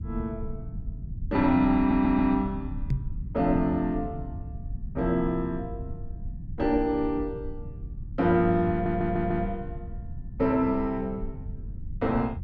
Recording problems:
rumble; below 110 Hz, SNR 12 dB
audio stuttering; at 2 s and at 8.5 s
knock on the microphone; at 3 s; peak +3 dB vs average level

